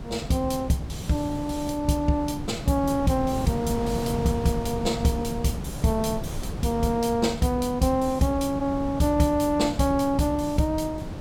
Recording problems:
wind on the microphone; below 300 Hz, SNR 9 dB

